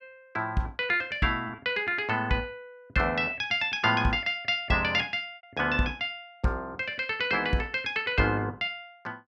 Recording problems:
lost packets; 1.4% of the sound replaced, filled with repeated pitch periods

